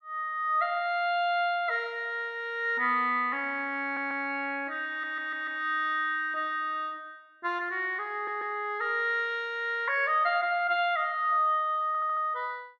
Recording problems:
stutter; 4 times, first at 4 s

